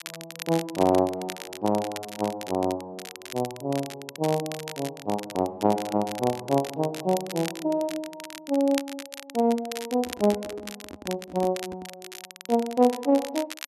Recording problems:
crackle; vinyl, SNR 13 dB
handling noise; from 10 to 12 s; peak -7 dB vs average level

